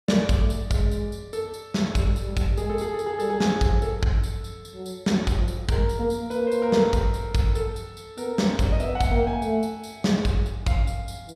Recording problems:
none

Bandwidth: 15 kHz